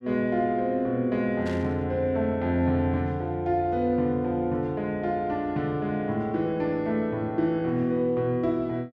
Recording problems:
burst of static; at 1.5 s; peak -12 dB vs average level

